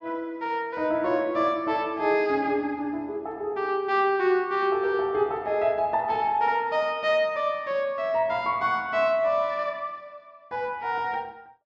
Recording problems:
none

